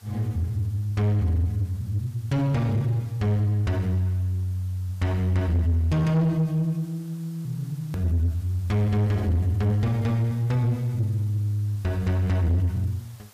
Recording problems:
distortion; soft clipping, signal-to-distortion ratio 11 dB
background hiss; slope -1 dB per octave, SNR 28 dB
edit click; at 8 s

